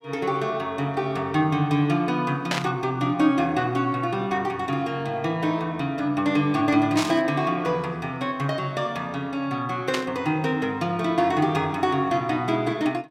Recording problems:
burst of static; at 2.5 s, at 7 s and at 10 s; peak +3 dB vs average level

